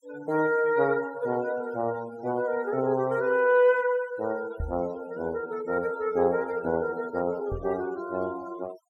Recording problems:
noise reduction artefacts; signal-to-artefact ratio 21 dB
microphone bump; at 4.5 s and at 7.5 s; peak -3 dB vs average level

